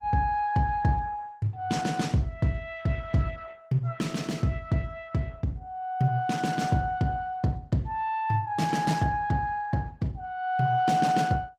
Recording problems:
lossy compression; Opus, log-spectral distance 2 dB

